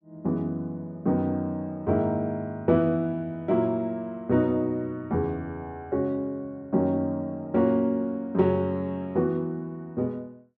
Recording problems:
none

